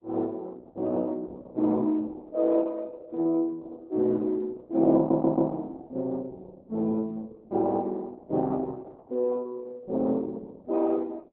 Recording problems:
lossy codec; Opus, log-spectral distance 2 dB
audio stuttering; at 5 s

